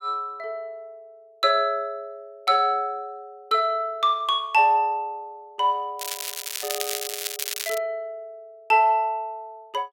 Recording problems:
crackle; from 6 to 8 s; loose cable, SNR 5 dB

